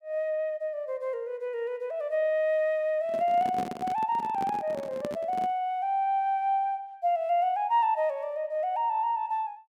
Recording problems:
handling noise; from 3 to 5.5 s; peak -3 dB vs average level

